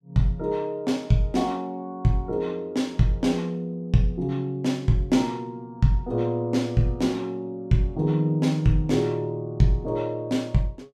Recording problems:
none

